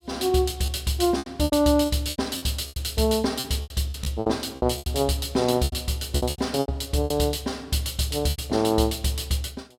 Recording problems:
packet loss; 13% of the sound replaced, filled with repeated pitch periods

